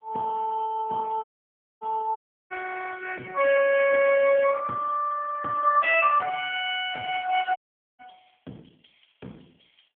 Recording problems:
phone line; 280 Hz to 3.2 kHz, AMR-NB
audio cutting out; at 1 s for 0.5 s, at 2 s and at 7.5 s

